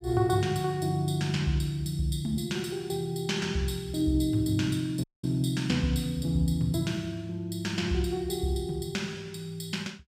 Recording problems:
dropout; at 5 s

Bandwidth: 15.5 kHz